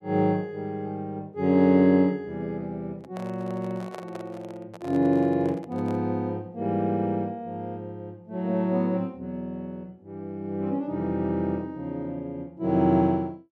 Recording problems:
microphone handling noise; from 3 to 6 s; peak -9 dB vs average level

